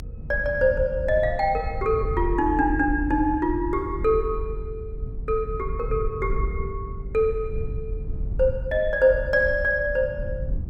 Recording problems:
low-frequency rumble; below 74 Hz, strongest tone 42 Hz, SNR 8 dB

